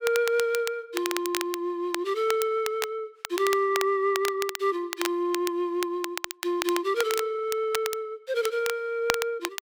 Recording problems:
crackling; vinyl, SNR 7 dB

